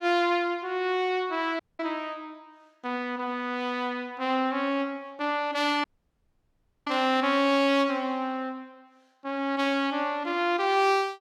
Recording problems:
dropout; at 1.5 s and at 6 s for 1 s

